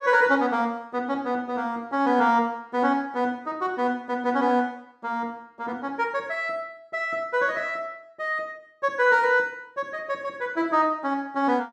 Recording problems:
none

